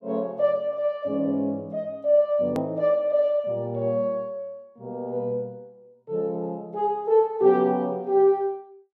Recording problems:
edit click; at 2.5 s

